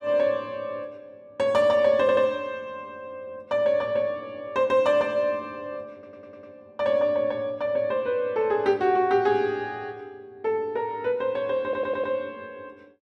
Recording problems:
audio stuttering; at 2 s, at 6 s and at 12 s

